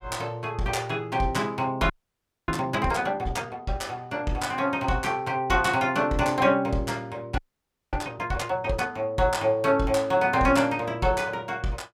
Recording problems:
frozen audio; at 2 s for 0.5 s and at 7.5 s for 0.5 s

